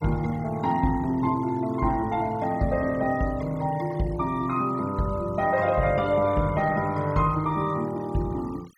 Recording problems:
denoising artefacts; signal-to-artefact ratio 22 dB

